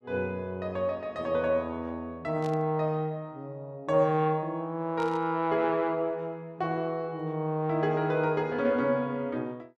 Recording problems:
static burst; at 2.5 s and at 5 s; peak -13 dB vs average level

